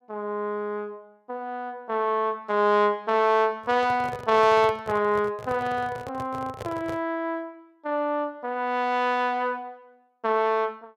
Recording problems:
microphone handling noise; from 3.5 to 7 s; peak -6 dB vs average level

